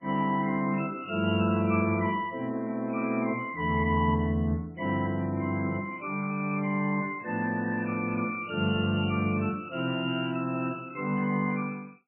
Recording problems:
lossy compression; MP2, then MP3, log-spectral distance 3 dB, nothing above 2.7 kHz

